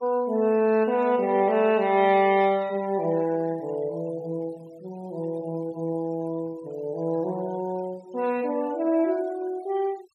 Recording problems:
denoising artefacts; signal-to-artefact ratio 24 dB

